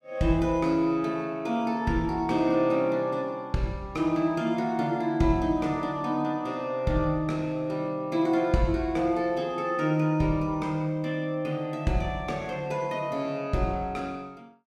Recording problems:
none

